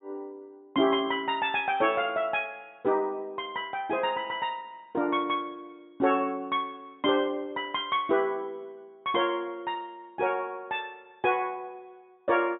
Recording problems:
treble cut off; nothing above 4 kHz

